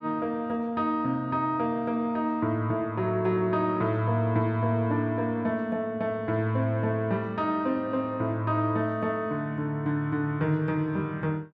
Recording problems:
none

